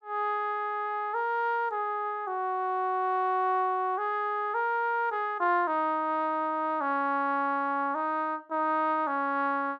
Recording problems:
none

